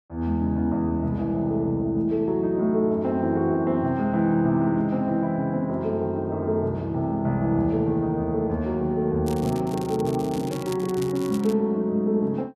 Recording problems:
crackle; from 9.5 to 12 s; loose cable, SNR 19 dB

